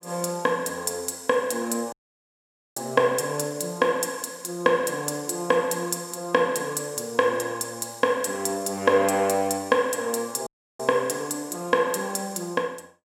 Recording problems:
dropout; at 2 s for 1 s and at 10 s

